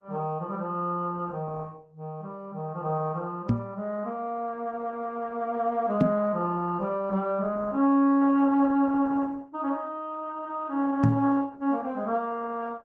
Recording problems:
codec artefacts; Opus, log-spectral distance 2 dB
knock on the microphone; at 3.5 s, at 6 s and at 11 s; peak +9 dB vs average level

